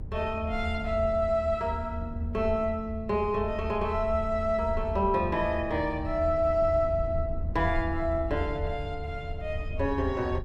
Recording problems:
rumble; below 80 Hz, SNR 7 dB

